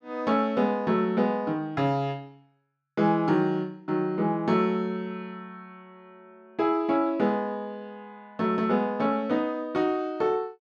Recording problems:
none

